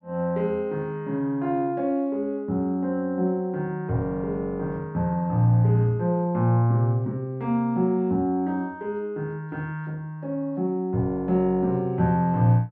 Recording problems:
none

